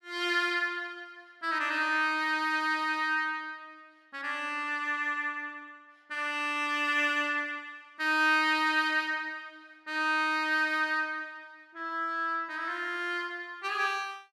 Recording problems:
none

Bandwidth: 14.5 kHz